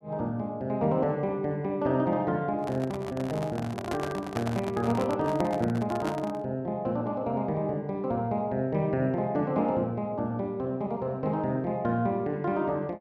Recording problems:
microphone handling noise; from 2.5 to 6.5 s; peak 0 dB vs average level

